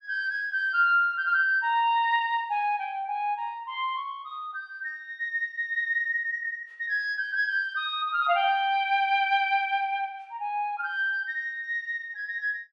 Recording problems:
none

